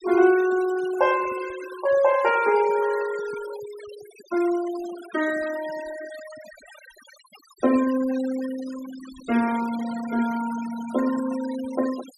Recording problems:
denoising artefacts; signal-to-artefact ratio 16 dB

